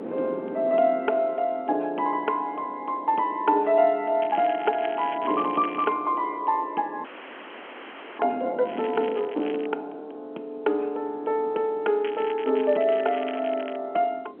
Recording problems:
telephone audio; 220 Hz to 3.3 kHz, G.711
wind noise; below 490 Hz, SNR 18 dB
crackling; from 4 to 6 s, from 8.5 to 9.5 s and from 12 to 14 s; loose cable, SNR 18 dB
frozen audio; at 7 s for 1 s

